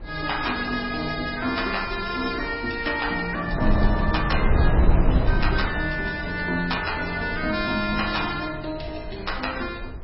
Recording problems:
lossy codec; MP3, log-spectral distance 5 dB, nothing above 5.3 kHz
wind on the microphone; below 120 Hz, SNR 1 dB

